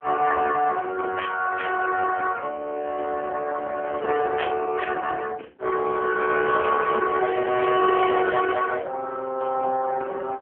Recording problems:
telephone audio; 280 Hz to 2.8 kHz, AMR-NB

